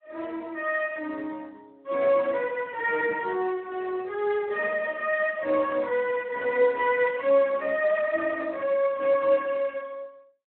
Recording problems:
phone line; 280 Hz to 3.4 kHz, Speex

